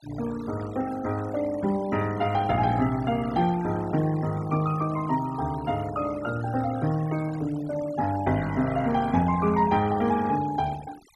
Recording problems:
noise reduction artefacts; signal-to-artefact ratio 17 dB

